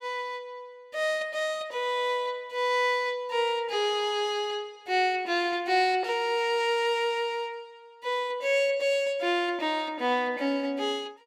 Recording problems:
none

